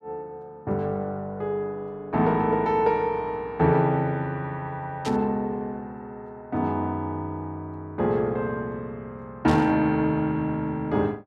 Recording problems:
static burst; at 5 s and at 9.5 s; peak -6 dB vs average level

